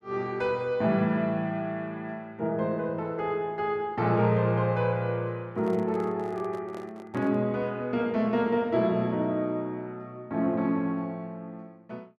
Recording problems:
microphone handling noise; from 5.5 to 7.5 s; peak -11 dB vs average level

